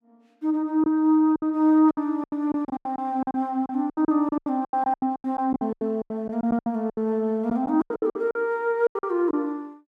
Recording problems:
packet loss; 19% of the sound replaced, filled with silence

